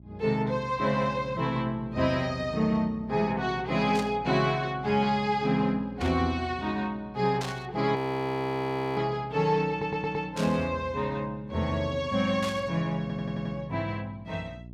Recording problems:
hum; 60 Hz, harmonics up to 600 Hz, SNR 19 dB
static burst; 5 times, first at 4 s; peak -5 dB vs average level
frozen audio; at 8 s for 1 s
stutter; at 9.5 s and at 13 s

